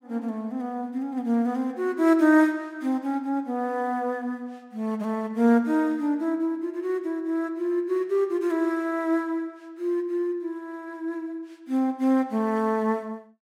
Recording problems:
none

